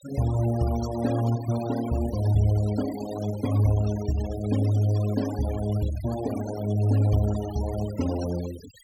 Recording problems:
denoising artefacts; signal-to-artefact ratio 15 dB

